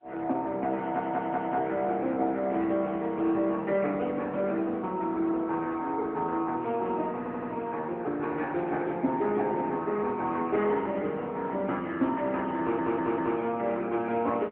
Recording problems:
phone line; 190 Hz to 3.4 kHz, AMR-NB
audio stuttering; at 1 s, at 7 s and at 13 s

